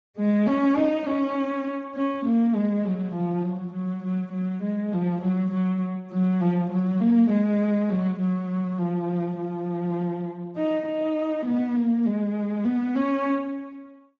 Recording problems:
codec artefacts; Speex, log-spectral distance 2 dB

